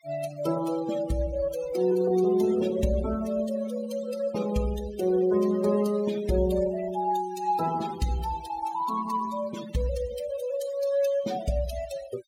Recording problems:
denoising artefacts; signal-to-artefact ratio 14 dB

